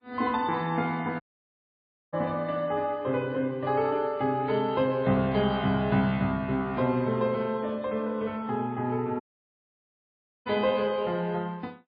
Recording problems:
lossy compression; MP3, log-spectral distance 2 dB, nothing above 4.6 kHz
dropout; at 1 s for 1 s and at 9 s for 1.5 s

